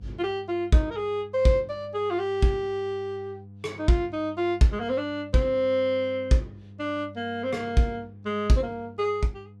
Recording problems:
hum; 50 Hz, harmonics up to 500 Hz, SNR 20 dB

